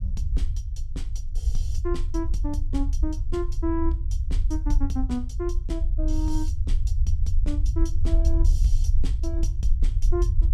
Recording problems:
low-frequency rumble; below 62 Hz, SNR -7 dB

